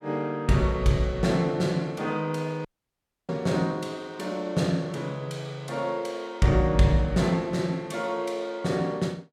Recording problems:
audio cutting out; at 2.5 s for 0.5 s

